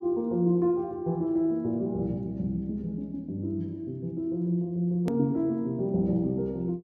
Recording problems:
edit click; at 5 s

